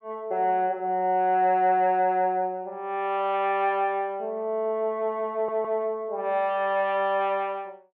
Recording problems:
audio stuttering; at 5.5 s

